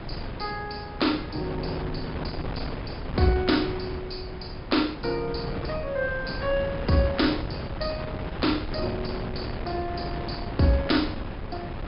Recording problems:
treble cut off; nothing above 5.5 kHz
wind noise; below 570 Hz, SNR 6 dB

